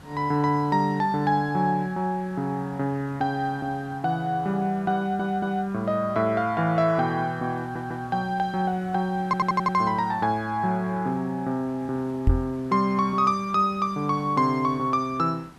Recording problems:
background hiss; slope -5 dB per octave, SNR 23 dB
audio stuttering; at 5 s, at 7.5 s and at 9.5 s
knock on the microphone; at 12 s; peak +7 dB vs average level

